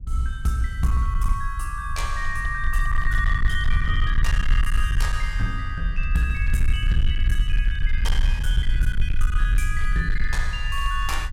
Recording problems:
distortion; hard clipping, signal-to-distortion ratio 11 dB
rumble; below 54 Hz, SNR -2 dB

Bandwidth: 16 kHz